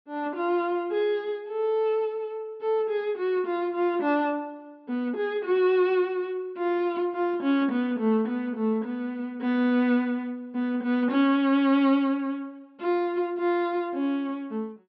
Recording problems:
treble cut off; nothing above 5.5 kHz

